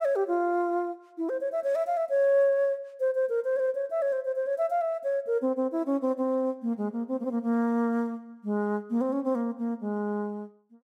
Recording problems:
none

